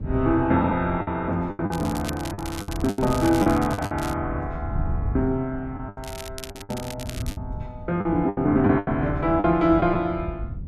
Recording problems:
wind on the microphone; below 120 Hz, SNR 11 dB
lost packets; 10% of the sound replaced, filled with the last packet
crackle; from 1.5 to 4 s, at 6 s and at 6.5 s; loose cable, SNR 15 dB

